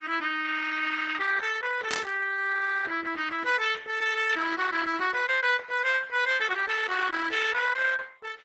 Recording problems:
lossy codec; AAC, then Opus, log-spectral distance 5 dB, nothing above 7.6 kHz
static burst; at 2 s; peak -2 dB vs average level

